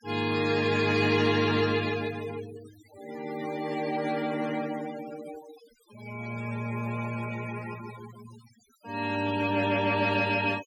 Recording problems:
denoising artefacts; signal-to-artefact ratio 15 dB

